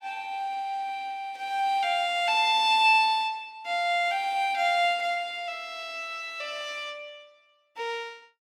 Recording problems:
none

